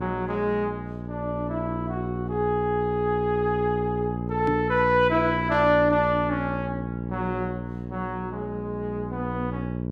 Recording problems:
electrical hum; 60 Hz, harmonics up to 600 Hz, SNR 6 dB
microphone thump; at 4.5 s; peak +2 dB vs average level

